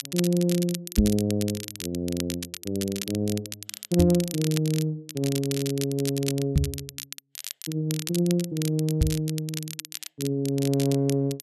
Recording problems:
crackling; vinyl, SNR 9 dB
knock on the microphone; 4 times, first at 1 s; peak +9 dB vs average level

